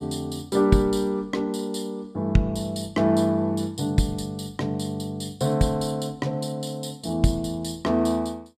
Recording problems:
none

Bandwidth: 14.5 kHz